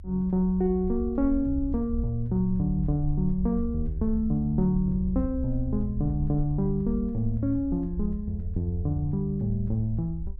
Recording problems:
low-frequency rumble; below 70 Hz, SNR 9 dB

